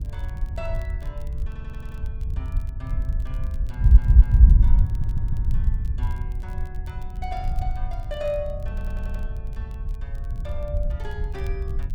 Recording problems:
electrical hum; 50 Hz, harmonics up to 1.1 kHz, SNR 21 dB
wind noise; below 64 Hz, SNR -12 dB
crackle; vinyl, SNR 21 dB
stutter; 4 times, first at 1.5 s

